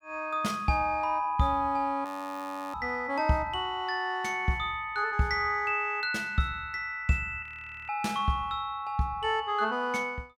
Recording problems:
audio freezing; at 2 s for 0.5 s and at 7.5 s

